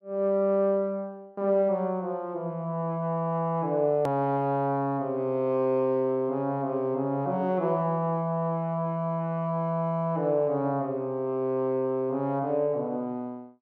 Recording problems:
edit click; at 4 s

